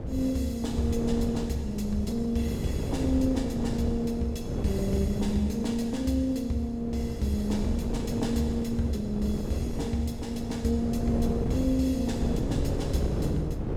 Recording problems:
wind noise; below 330 Hz, SNR 4 dB

